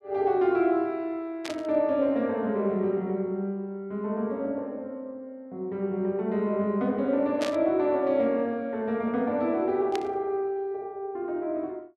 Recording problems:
static burst; at 1.5 s, at 7.5 s and at 10 s; peak -3 dB vs average level

